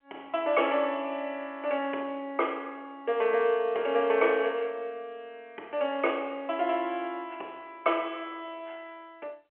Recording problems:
telephone audio; 370 Hz to 3.2 kHz, G.711

